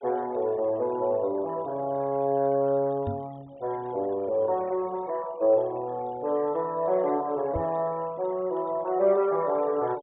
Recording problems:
low-pass filter; nothing above 4 kHz
denoising artefacts; signal-to-artefact ratio 26 dB
microphone thump; at 3 s and at 7.5 s; peak -2 dB vs average level

